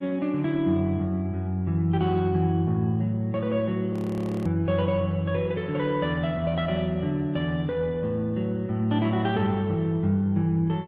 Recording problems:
lossy codec; AAC, then Opus, log-spectral distance 2 dB, nothing above 13.1 kHz
audio freezing; at 4 s for 0.5 s

